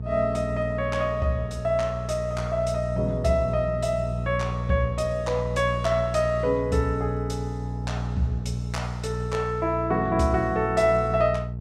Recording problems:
hum; 60 Hz, harmonics up to 480 Hz, SNR 5 dB

